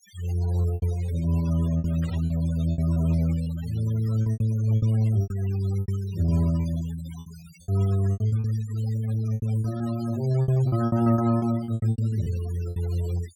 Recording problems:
denoising artefacts; signal-to-artefact ratio 20 dB
packet loss; 14% of the sound replaced, filled with repeated pitch periods
static burst; at 2 s; peak -19 dB vs average level

